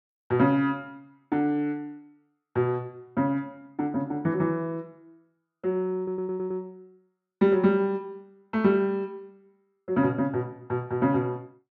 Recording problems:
audio stuttering; at 6 s

